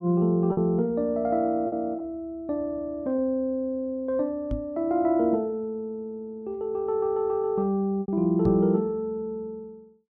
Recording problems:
packet loss; 2% of the sound replaced, filled with repeated pitch periods
microphone thump; at 4.5 s and at 8.5 s; peak +1 dB vs average level

